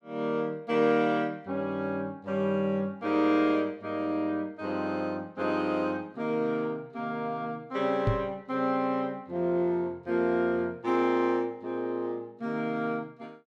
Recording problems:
microphone thump; at 8 s; peak +5 dB vs average level

